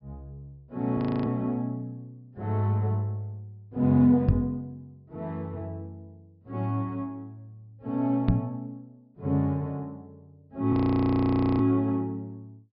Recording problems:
low-pass filter; nothing above 5.5 kHz
frozen audio; at 1 s and at 11 s for 1 s
knock on the microphone; at 4.5 s and at 8.5 s; peak +8 dB vs average level

